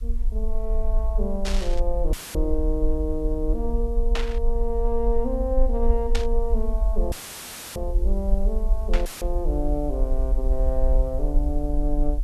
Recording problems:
hiss; SNR 29 dB
rumble; below 48 Hz, SNR -2 dB
static burst; 4 times, first at 1.5 s; peak +4 dB vs average level
audio cutting out; at 2 s, at 7 s for 0.5 s and at 9 s; filled with static

